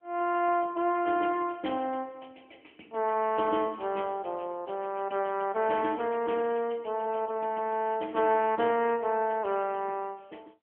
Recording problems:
telephone audio; 240 Hz to 3.2 kHz, AMR-NB

